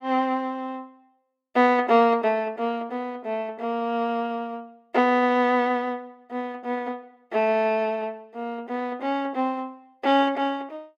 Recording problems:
none

